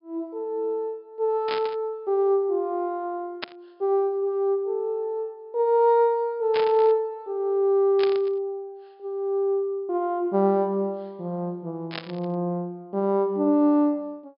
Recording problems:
treble missing; nothing above 5.5 kHz
burst of static; 5 times, first at 1.5 s; peak -2 dB vs average level

